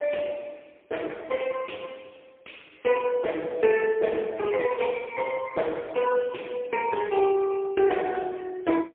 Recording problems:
phone line; 240 Hz to 3.4 kHz, AMR-NB, then MP3

